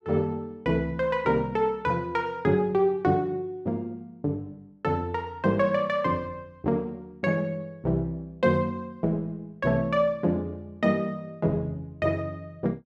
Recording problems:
none

